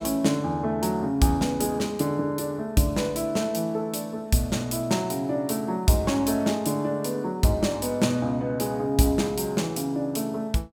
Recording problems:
none

